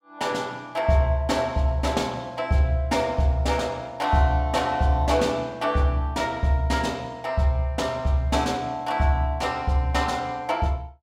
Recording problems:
none

